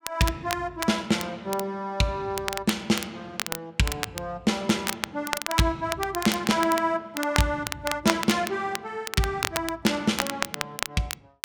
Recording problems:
crackling; vinyl, SNR 6 dB

